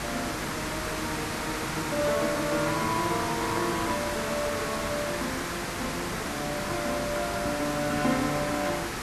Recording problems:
hum; 50 Hz, harmonics up to 500 Hz, SNR 15 dB
hiss; SNR 1 dB

